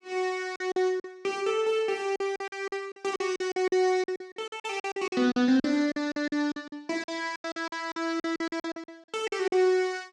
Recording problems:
lost packets; 17% of the sound replaced, filled with silence

